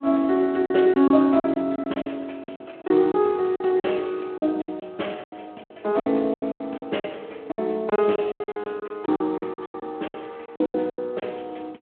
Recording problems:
telephone audio; 240 Hz to 3.3 kHz, Speex
lost packets; 16% of the sound replaced, filled with silence

